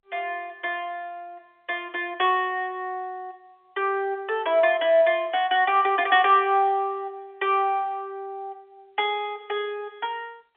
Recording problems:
telephone audio; 280 Hz to 3.5 kHz, G.711

